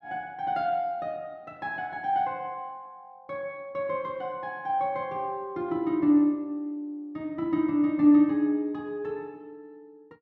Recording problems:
none

